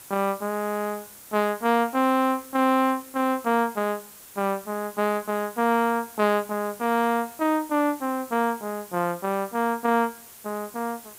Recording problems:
background hiss; slope -1 dB per octave, SNR 18 dB

